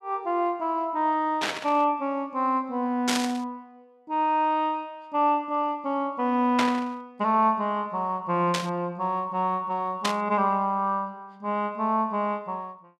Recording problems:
static burst; 5 times, first at 1.5 s; peak +4 dB vs average level

